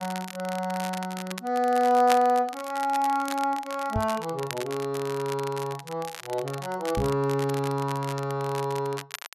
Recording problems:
crackling; vinyl, SNR 13 dB
microphone bump; at 4 s and at 7 s; peak +1 dB vs average level

